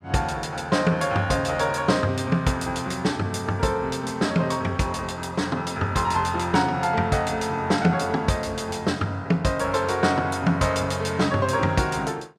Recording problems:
none

